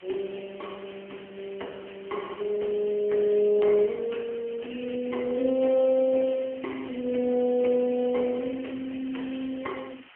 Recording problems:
phone line; 220 Hz to 3.2 kHz, AMR-NB
background hiss; SNR 24 dB

